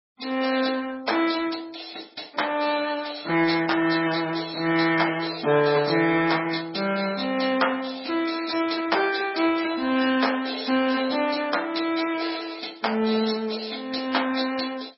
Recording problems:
lossy codec; MP2, then MP3, log-spectral distance 8 dB, nothing above 5.3 kHz

